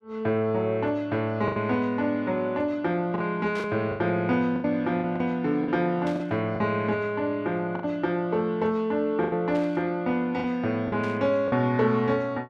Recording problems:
packet loss; 6% of the sound replaced, filled with the last packet
static burst; 4 times, first at 3.5 s; peak -12 dB vs average level

